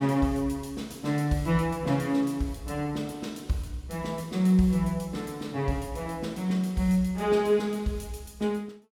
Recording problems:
none

